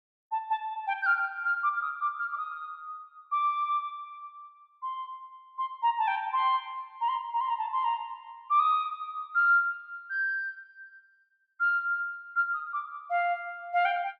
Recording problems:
none

